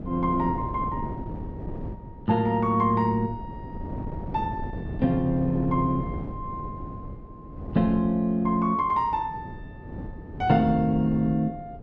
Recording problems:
wind noise; below 290 Hz, SNR 11 dB

